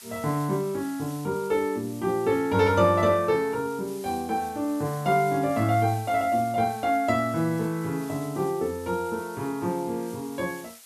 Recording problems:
hiss; slope +3 dB per octave, SNR 20 dB

